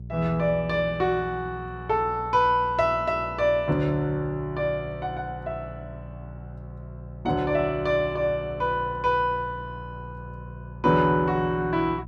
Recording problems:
hum; 60 Hz, harmonics up to 420 Hz, SNR 15 dB

